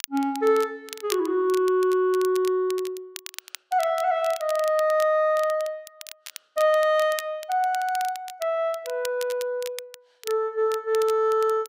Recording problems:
crackling; vinyl, SNR 16 dB

